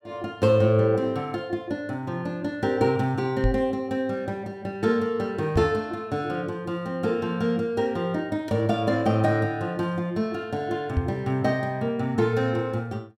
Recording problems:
microphone thump; at 3.5 s, at 5.5 s and at 11 s; peak +5 dB vs average level

